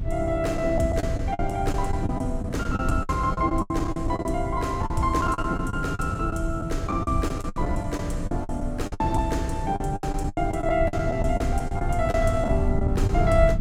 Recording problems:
low-frequency rumble; below 110 Hz, SNR 4 dB
wind on the microphone; below 300 Hz, SNR 17 dB
packet loss; 14% of the sound replaced, filled with the last packet

